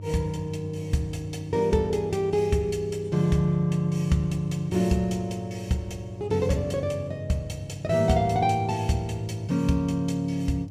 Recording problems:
hum; 50 Hz, harmonics up to 600 Hz, SNR 14 dB

